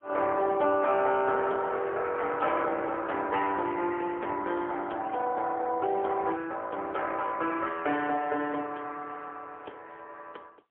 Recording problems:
phone line; 300 Hz to 3.9 kHz, AMR-NB, then MP3

